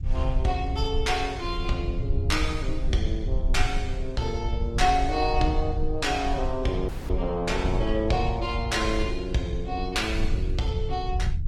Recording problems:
lossy compression; Opus, log-spectral distance 2 dB, nothing above 18.3 kHz
low-frequency rumble; below 72 Hz, SNR 3 dB
dropout; at 7 s

